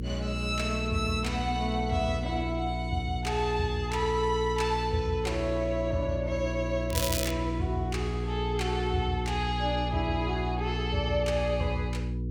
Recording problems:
electrical hum; 60 Hz, harmonics up to 480 Hz, SNR 3 dB
crackle; at 7 s; loose cable, SNR 3 dB

